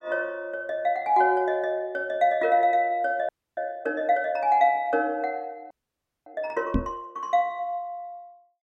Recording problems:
frozen audio; at 3.5 s and at 5.5 s for 0.5 s
microphone bump; at 7 s; peak +5 dB vs average level

